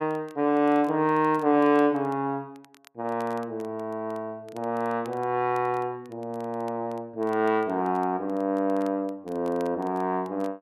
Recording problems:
crackle; vinyl, SNR 30 dB

